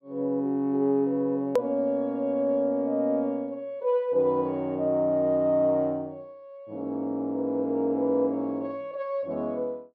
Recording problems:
edit click; at 1.5 s

